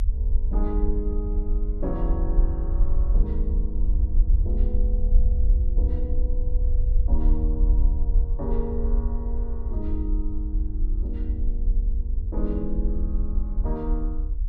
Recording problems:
low-frequency rumble; below 54 Hz, SNR -9 dB

